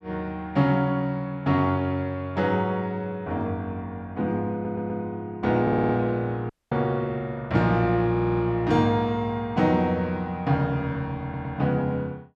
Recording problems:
stutter; 4 times, first at 4.5 s
audio cutting out; at 6.5 s

